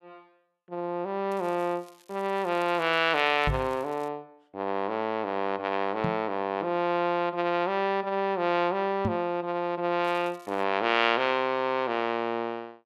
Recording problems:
crackle; from 1.5 to 4 s and at 10 s; loose cable, SNR 28 dB
knock on the microphone; at 3.5 s, at 6 s and at 9 s; peak +1 dB vs average level

